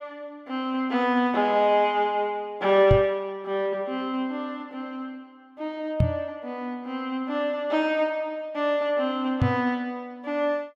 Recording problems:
microphone thump; at 3 s, at 6 s and at 9.5 s; peak +8 dB vs average level

